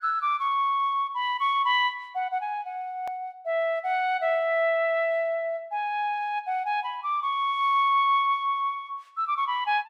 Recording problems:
hard cut with a click; at 3 s

